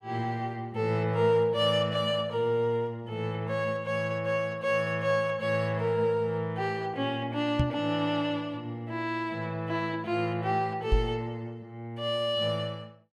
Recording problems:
knock on the microphone; at 7.5 s and at 11 s; peak +6 dB vs average level

